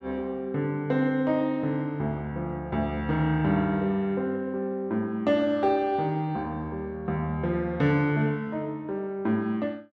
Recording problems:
none

